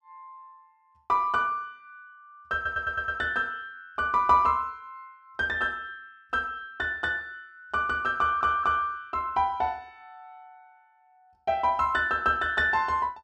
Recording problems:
audio stuttering; at 2.5 s and at 8 s

